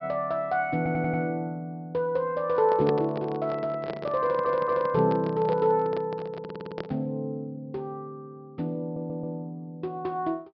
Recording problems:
treble cut off; nothing above 5.5 kHz
stutter; 4 times, first at 1 s
microphone handling noise; from 2.5 to 7 s; peak +3 dB vs average level

